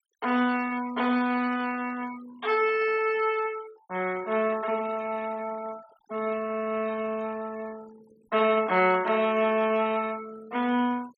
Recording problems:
denoising artefacts; signal-to-artefact ratio 21 dB

